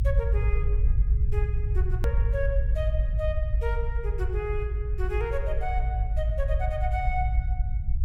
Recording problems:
low-frequency rumble; below 64 Hz, SNR -6 dB
hard cut with a click; at 2 s

